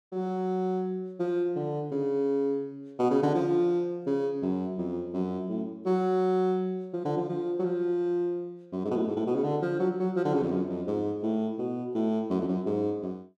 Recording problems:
none

